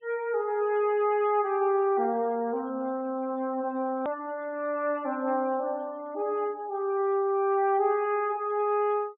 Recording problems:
treble cut off; nothing above 3.7 kHz
noise reduction artefacts; signal-to-artefact ratio 27 dB
click at an edit; at 4 s

